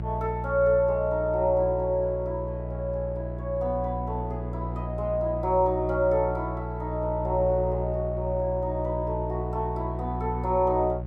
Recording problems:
electrical hum; 60 Hz, harmonics up to 720 Hz, SNR 6 dB

